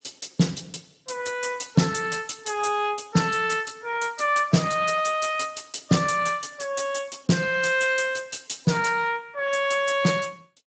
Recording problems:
codec artefacts; Speex, log-spectral distance 8 dB, nothing above 8 kHz

